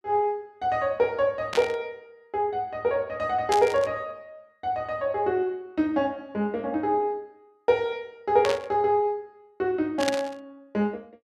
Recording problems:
static burst; 4 times, first at 1.5 s; peak +2 dB vs average level

